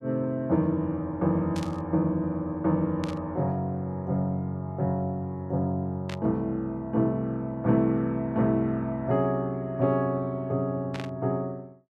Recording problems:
static burst; 4 times, first at 1.5 s; peak -7 dB vs average level

